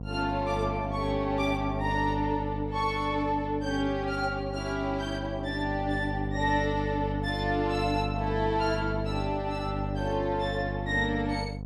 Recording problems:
electrical hum; 50 Hz, harmonics up to 750 Hz, SNR 5 dB

